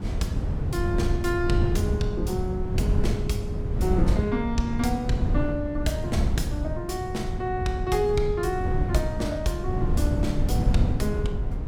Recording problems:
wind noise; below 130 Hz, SNR -1 dB

